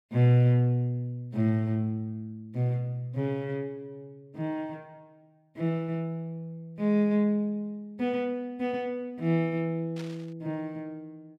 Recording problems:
burst of static; at 10 s; peak -12 dB vs average level

